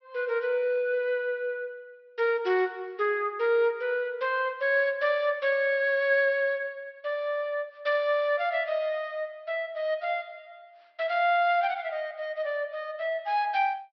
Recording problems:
low-pass filter; nothing above 5.5 kHz

